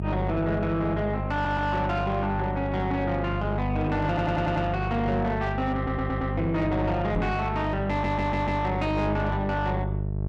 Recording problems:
distorted audio; soft clipping, signal-to-distortion ratio 10 dB
hum; 50 Hz, harmonics up to 750 Hz, SNR 3 dB
audio stuttering; 4 times, first at 1.5 s
microphone bump; at 7 s; peak +3 dB vs average level

